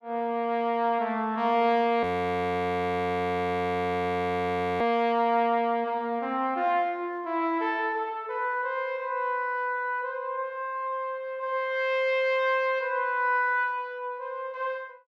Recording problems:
frozen audio; at 2 s for 3 s

